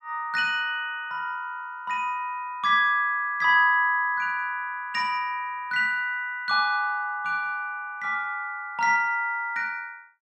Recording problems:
none

